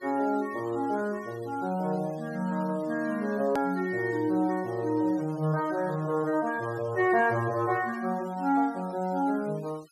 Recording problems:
noise reduction artefacts; signal-to-artefact ratio 24 dB
hard cut with a click; at 3.5 s

